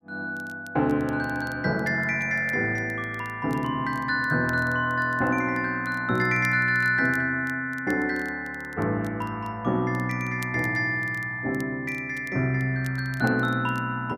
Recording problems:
crackle; vinyl, SNR 27 dB

